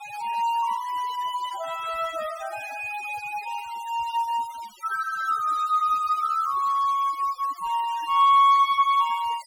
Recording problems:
denoising artefacts; signal-to-artefact ratio 21 dB

